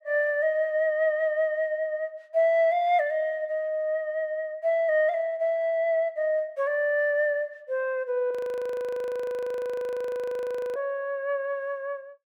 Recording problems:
audio freezing; at 8.5 s for 2.5 s

